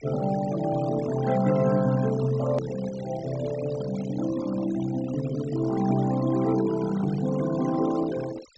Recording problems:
low-pass filter; nothing above 8 kHz
noise reduction artefacts; signal-to-artefact ratio 16 dB
edit click; at 2.5 s

